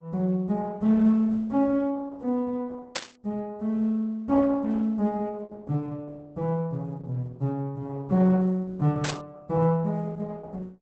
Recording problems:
lossy compression; Opus, log-spectral distance 2 dB, nothing above 7.6 kHz
static burst; at 3 s and at 9 s; peak +1 dB vs average level

